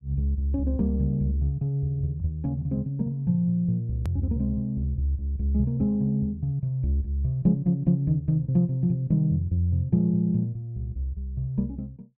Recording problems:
hard cut with a click; at 4 s

